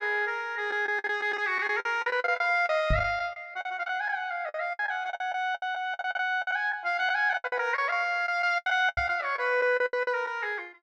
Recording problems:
lost packets; 15% of the sound replaced, filled with the last packet
knock on the microphone; at 3 s and at 9 s; peak +2 dB vs average level

